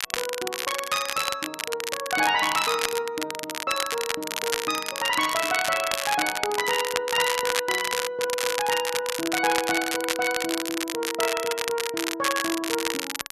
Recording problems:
crackle; vinyl, SNR 2 dB

